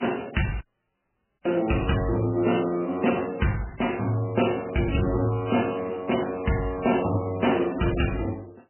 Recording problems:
lossy codec; MP2, then MP3, log-spectral distance 7 dB, nothing above 3 kHz
dropout; at 0.5 s for 1 s

